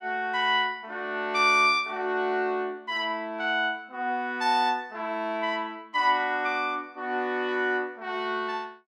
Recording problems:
none

